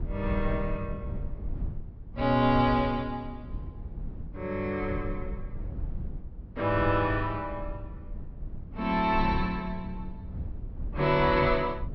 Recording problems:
low-pass filter; nothing above 5.7 kHz
low-frequency rumble; below 96 Hz, SNR 10 dB

